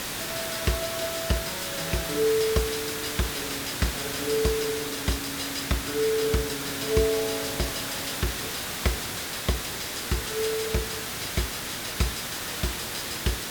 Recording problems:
background hiss; slope -1 dB per octave, SNR 1 dB

